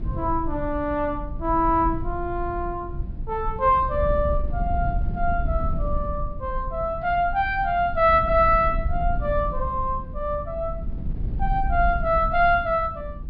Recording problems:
treble cut off; nothing above 5.5 kHz
wind on the microphone; below 74 Hz, SNR 7 dB

